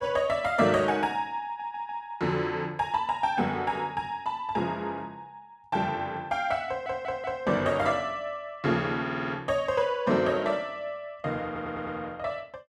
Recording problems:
audio stuttering; 4 times, first at 1.5 s

